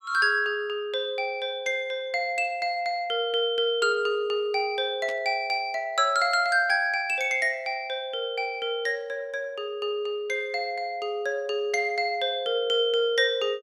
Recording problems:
static burst; at 5 s; peak -10 dB vs average level

